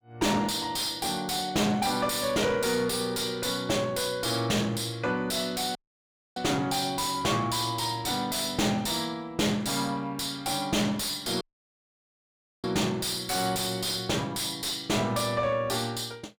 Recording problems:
distorted audio; soft clipping, signal-to-distortion ratio 5 dB
audio cutting out; at 6 s for 0.5 s and at 11 s for 1 s

